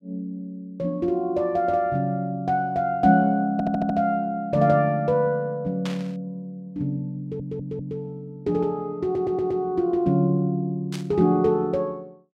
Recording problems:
stutter; at 3.5 s, at 7 s and at 9 s
burst of static; at 6 s and at 11 s; peak -7 dB vs average level

